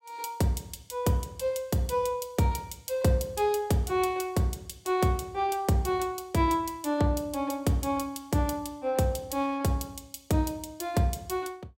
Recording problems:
none

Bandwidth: 16 kHz